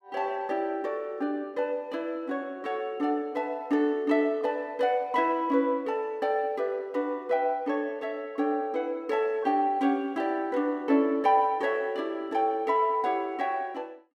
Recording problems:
none

